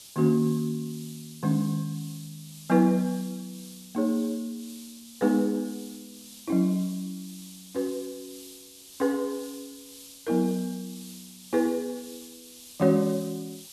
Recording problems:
background hiss; SNR 18 dB

